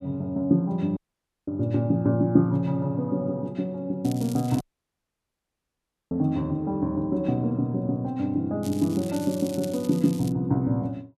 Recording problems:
dropout; at 1 s for 0.5 s and at 4.5 s for 1.5 s
crackle; at 4 s and from 8.5 to 10 s; loose cable, SNR 18 dB

